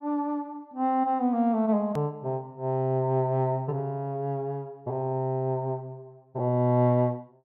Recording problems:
edit click; at 2 s

